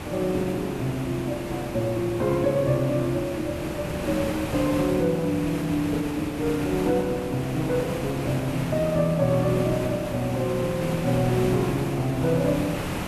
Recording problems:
background hiss; SNR 7 dB

